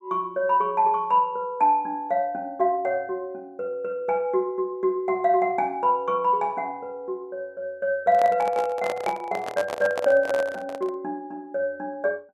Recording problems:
microphone handling noise; from 8 to 11 s; peak -1 dB vs average level

